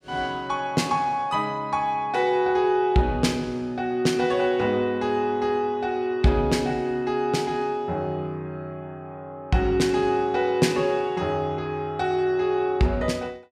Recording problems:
none

